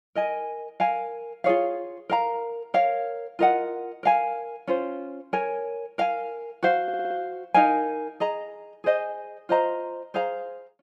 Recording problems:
audio stuttering; at 7 s

